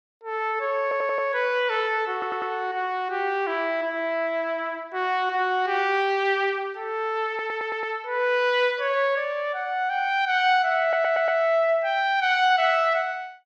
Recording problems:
stutter; 4 times, first at 1 s

